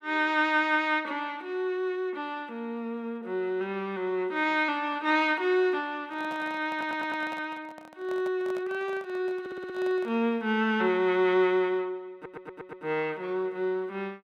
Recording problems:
microphone handling noise; from 6 to 10 s; peak -11 dB vs average level
audio stuttering; at 6.5 s, at 9.5 s and at 12 s

